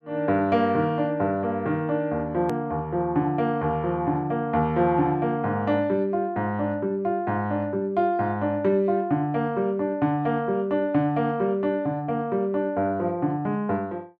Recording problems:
hard cut with a click; at 2.5 s

